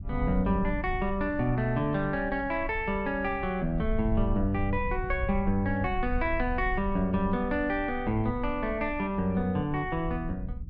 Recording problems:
low-frequency rumble; below 68 Hz, SNR 9 dB

